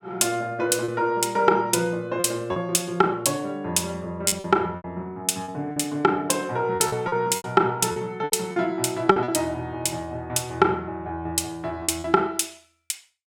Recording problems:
lost packets; 7% of the sound replaced, filled with repeated pitch periods

